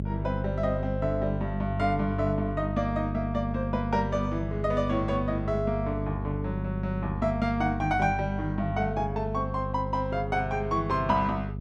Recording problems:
hum; 50 Hz, harmonics up to 450 Hz, SNR 4 dB

